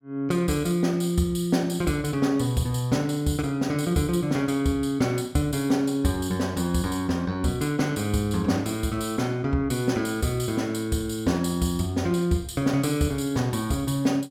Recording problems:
none

